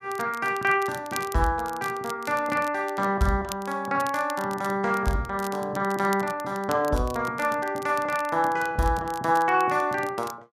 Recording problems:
crackle; vinyl, SNR 18 dB

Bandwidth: 14.5 kHz